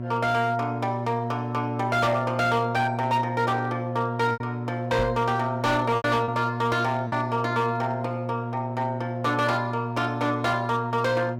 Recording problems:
distortion; hard clipping, signal-to-distortion ratio 11 dB
mains hum; 60 Hz, harmonics up to 960 Hz, SNR 6 dB
lost packets; 2% of the sound replaced, filled with repeated pitch periods
knock on the microphone; at 5 s; peak -3 dB vs average level

